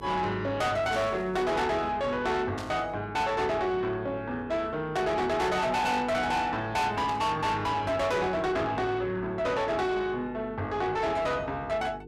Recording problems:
distortion; soft clipping, signal-to-distortion ratio 8 dB
electrical hum; 50 Hz, harmonics up to 450 Hz, SNR 18 dB
static burst; 4 times, first at 1 s; peak -10 dB vs average level

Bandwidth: 14.5 kHz